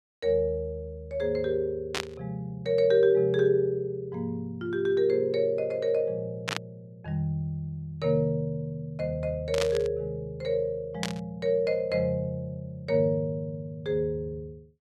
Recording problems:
burst of static; 4 times, first at 2 s; peak +2 dB vs average level

